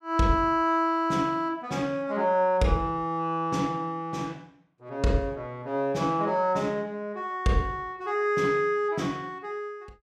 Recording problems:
none

